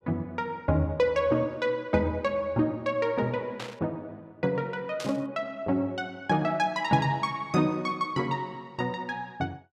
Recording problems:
burst of static; at 3.5 s and at 5 s; peak -6 dB vs average level

